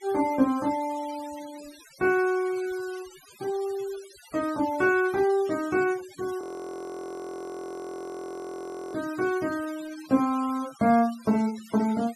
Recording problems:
noise reduction artefacts; signal-to-artefact ratio 19 dB
frozen audio; at 6.5 s for 2.5 s

